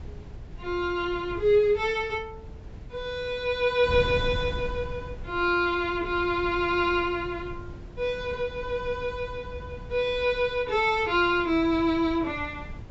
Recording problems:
low-pass filter; nothing above 8 kHz
wind noise; below 140 Hz, SNR 15 dB

